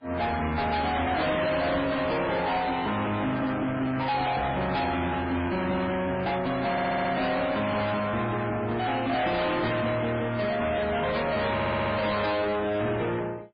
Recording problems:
lossy codec; MP3, then MP3, log-spectral distance 4 dB, nothing above 4.5 kHz
distortion; soft clipping, signal-to-distortion ratio 6 dB
stutter; at 6.5 s and at 12 s

